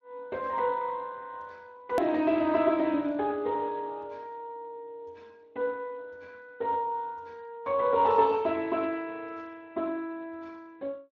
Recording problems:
codec artefacts; Speex, log-spectral distance 2 dB, nothing above 13.1 kHz
hard cut with a click; at 2 s

